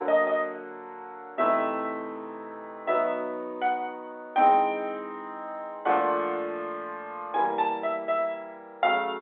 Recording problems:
telephone audio; 320 Hz to 3.8 kHz, G.711

